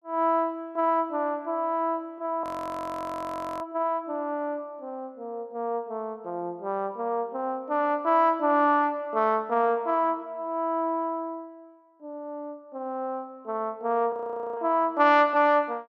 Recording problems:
frozen audio; at 2.5 s for 1 s and at 14 s

